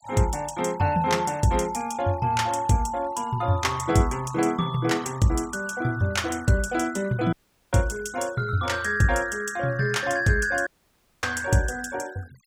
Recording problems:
noise reduction artefacts; signal-to-artefact ratio 23 dB
audio cutting out; at 7.5 s and at 11 s for 0.5 s

